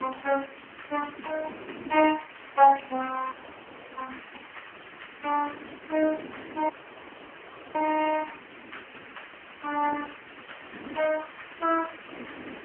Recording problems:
phone line; 220 Hz to 3 kHz, AMR-NB
hiss; SNR 18 dB
wind on the microphone; below 520 Hz, SNR 18 dB
dropout; at 3.5 s for 0.5 s and at 6.5 s for 1 s

